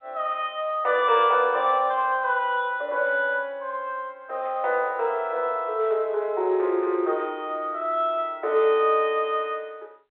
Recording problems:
telephone audio; 320 Hz to 3.6 kHz, G.711

